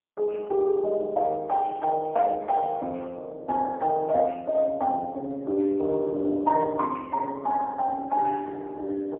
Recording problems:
phone line; 260 Hz to 2.1 kHz, AMR-NB, then MP3

